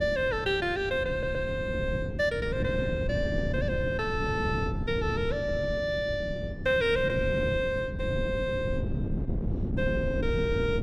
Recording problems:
wind on the microphone; below 220 Hz, SNR 4 dB
audio stuttering; at 1 s

